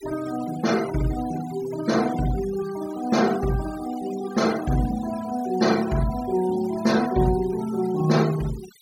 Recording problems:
denoising artefacts; signal-to-artefact ratio 16 dB

